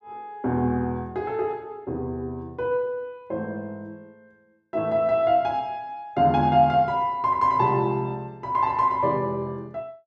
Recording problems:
none

